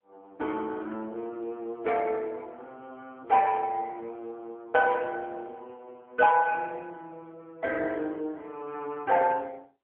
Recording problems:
phone line; 240 Hz to 2.3 kHz, AMR-NB

